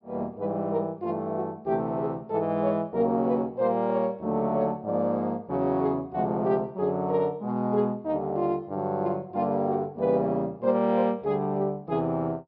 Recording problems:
low-pass filter; nothing above 5.3 kHz

